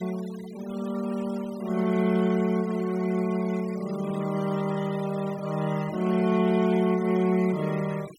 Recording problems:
noise reduction artefacts; signal-to-artefact ratio 19 dB

